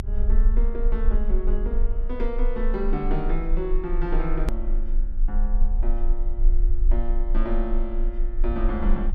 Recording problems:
low-frequency rumble; below 32 Hz, strongest tone 24 Hz, SNR -5 dB
hard cut with a click; at 4.5 s

